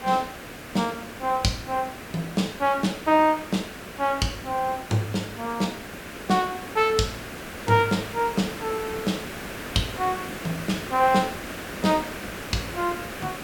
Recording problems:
background hiss; SNR 10 dB

